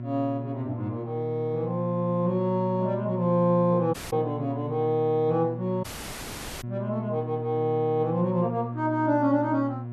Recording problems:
electrical hum; 60 Hz, harmonics up to 720 Hz, SNR 8 dB
dropout; at 4 s and at 6 s for 1 s

